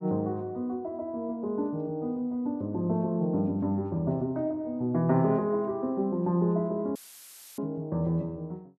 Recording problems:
dropout; at 7 s for 0.5 s; filled with static

